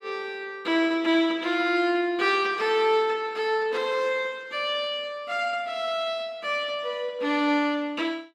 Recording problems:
none

